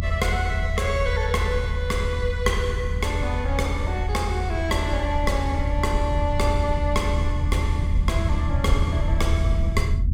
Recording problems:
rumble; below 80 Hz, SNR -1 dB

